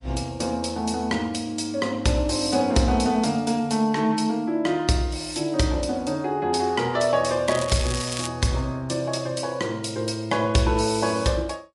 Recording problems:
lossy compression; MP3, log-spectral distance 3 dB, nothing above 11 kHz
crackle; at 7.5 s; loose cable, SNR 9 dB

